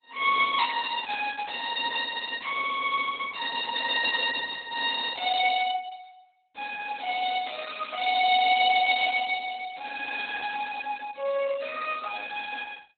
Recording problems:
lossy codec; Opus, log-spectral distance 6 dB, nothing above 3.8 kHz
crackling; from 1 to 3 s and at 7.5 s; loose cable, SNR 28 dB

